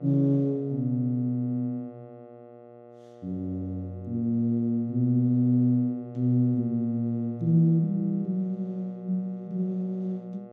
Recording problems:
hum; 60 Hz, harmonics up to 1.4 kHz, SNR 20 dB

